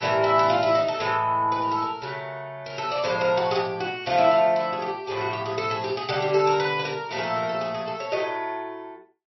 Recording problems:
codec artefacts; MP3, log-spectral distance 4 dB, nothing above 5.7 kHz

